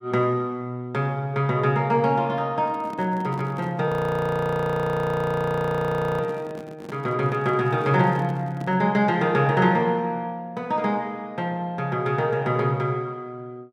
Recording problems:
handling noise; from 2.5 to 9 s; peak -9 dB vs average level
frozen audio; at 4 s for 2.5 s

